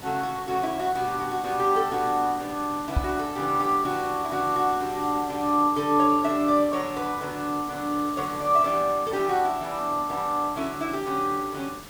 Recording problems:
hiss; slope -3 dB per octave, SNR 16 dB
microphone bump; at 3 s; peak +4 dB vs average level

